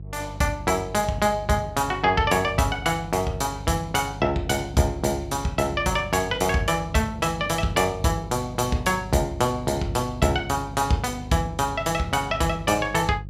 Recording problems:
hum; 50 Hz, harmonics up to 350 Hz, SNR 14 dB

